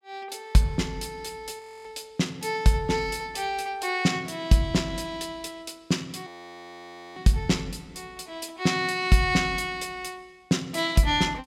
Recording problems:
frozen audio; at 1.5 s and at 6.5 s for 1 s

